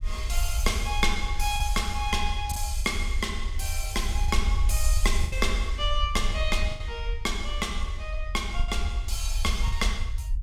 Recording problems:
low-frequency rumble; below 62 Hz, SNR 1 dB
packet loss; 4% of the sound replaced, filled with the last packet

